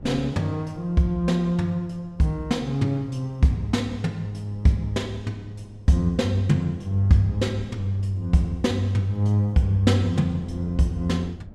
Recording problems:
wind on the microphone; below 200 Hz, SNR 23 dB

